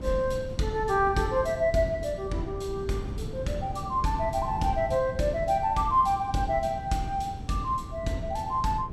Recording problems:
wind on the microphone; below 190 Hz, SNR 11 dB

